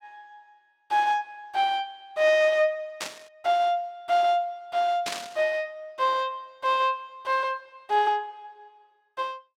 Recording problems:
static burst; at 3 s and at 5 s; peak -1 dB vs average level

